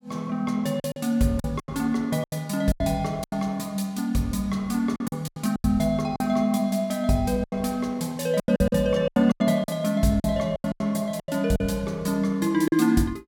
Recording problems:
lost packets; 12% of the sound replaced, filled with silence

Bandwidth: 17 kHz